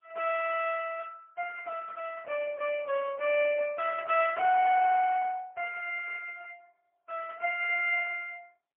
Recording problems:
phone line; 470 Hz to 3.3 kHz, AMR-NB, then MP3

